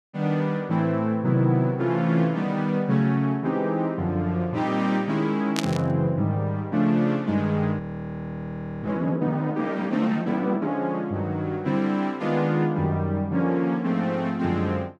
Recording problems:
burst of static; at 5.5 s; peak +2 dB vs average level
audio freezing; at 8 s for 1 s

